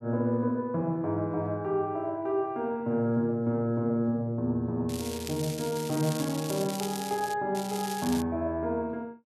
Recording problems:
crackling; from 5 to 7.5 s and at 7.5 s; loose cable, SNR 10 dB

